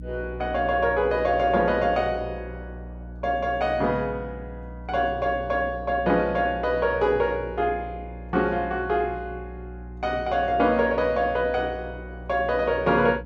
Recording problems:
hum; 60 Hz, harmonics up to 300 Hz, SNR 15 dB

